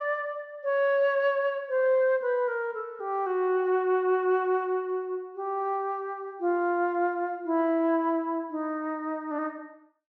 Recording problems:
low-pass filter; nothing above 6.4 kHz

